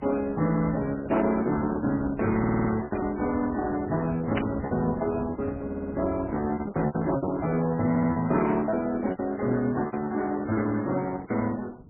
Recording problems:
lossy codec; Opus, then MP3, log-spectral distance 3 dB
low-frequency rumble; below 210 Hz, SNR 15 dB
lost packets; 9% of the sound replaced, filled with repeated pitch periods
audio stuttering; at 2.5 s, at 5.5 s and at 8 s
static burst; at 3 s and at 4.5 s; peak -2 dB vs average level

